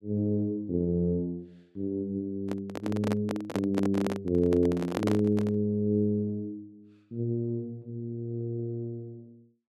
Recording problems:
handling noise; from 2.5 to 5.5 s; peak +4 dB vs average level

